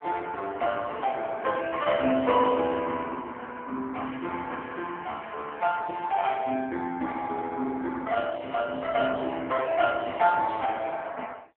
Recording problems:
phone line; 190 Hz to 3.5 kHz, AMR-NB

